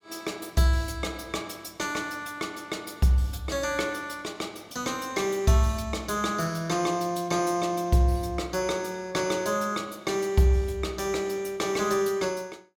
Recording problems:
none

